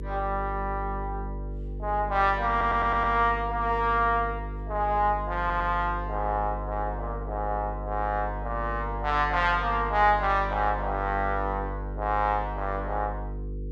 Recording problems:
mains hum; 50 Hz, harmonics up to 500 Hz, SNR 9 dB
audio stuttering; at 2.5 s and at 5.5 s

